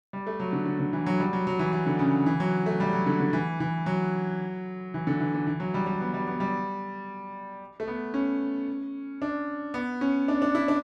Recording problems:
none

